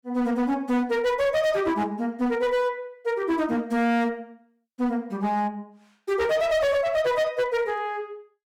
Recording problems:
distorted audio; hard clipping, uneven, signal-to-distortion ratio 8 dB

